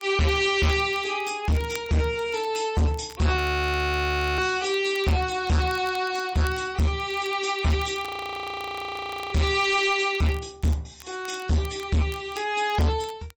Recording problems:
codec artefacts; MP3, log-spectral distance 4 dB
distortion; hard clipping, signal-to-distortion ratio 7 dB
crackling; vinyl, SNR 24 dB
audio freezing; at 3.5 s for 1 s and at 8 s for 1.5 s

